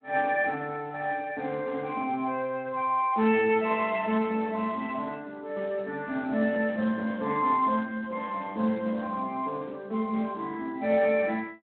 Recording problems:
telephone audio; 170 Hz to 3.5 kHz, Speex

